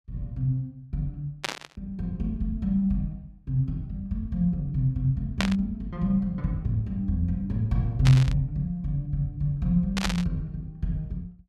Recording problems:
static burst; 4 times, first at 1.5 s; peak +4 dB vs average level

